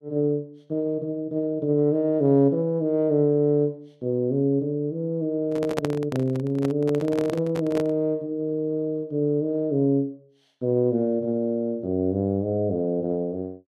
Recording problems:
handling noise; from 5.5 to 8 s; peak +2 dB vs average level

